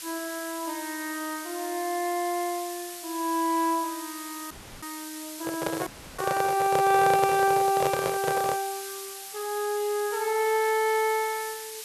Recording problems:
background hiss; slope +4 dB per octave, SNR 11 dB
audio cutting out; at 4.5 s and at 6 s
microphone handling noise; from 5.5 to 8.5 s; peak +3 dB vs average level

